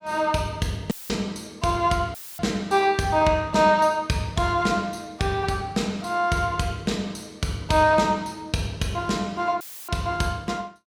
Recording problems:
dropout; at 1 s, at 2 s and at 9.5 s; filled with static

